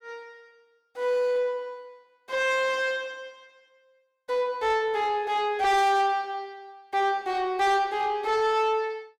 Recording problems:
distorted audio; soft clipping, signal-to-distortion ratio 8 dB

